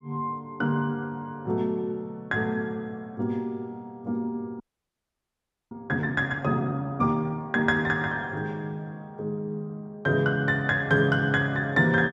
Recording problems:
frozen audio; at 4.5 s for 1 s

